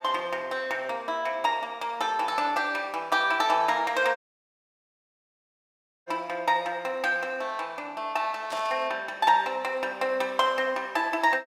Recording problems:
audio cutting out; at 4 s for 2 s
static burst; at 8.5 s; peak -9 dB vs average level

